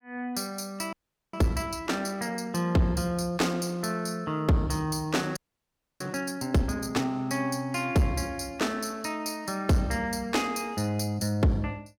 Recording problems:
distortion; soft clipping, signal-to-distortion ratio 11 dB
audio freezing; at 1 s and at 5.5 s for 0.5 s

